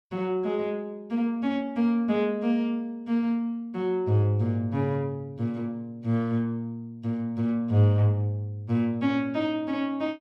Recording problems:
none

